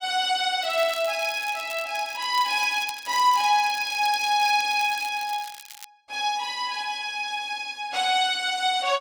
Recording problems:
crackling; from 0.5 to 6 s; loose cable, SNR 17 dB

